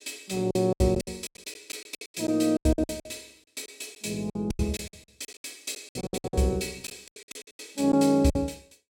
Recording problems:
packet loss; 21% of the sound replaced, filled with silence

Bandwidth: 17 kHz